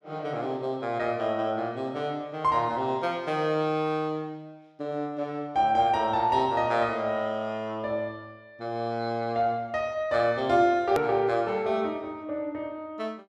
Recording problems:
click at an edit; at 11 s

